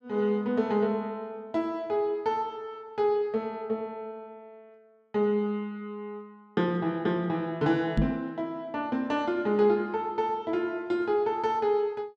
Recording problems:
knock on the microphone; at 8 s; peak +7 dB vs average level

